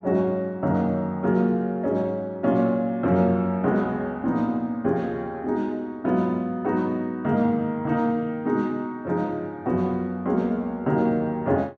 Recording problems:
none

